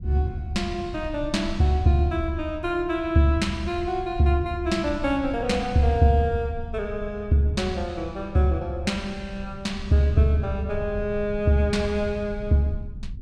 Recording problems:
rumble; below 92 Hz, SNR 14 dB

